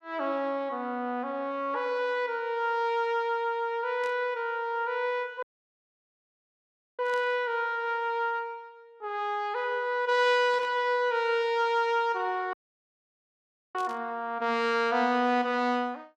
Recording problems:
static burst; 4 times, first at 4 s; peak -13 dB vs average level
dropout; at 5.5 s for 1.5 s and at 13 s for 1 s

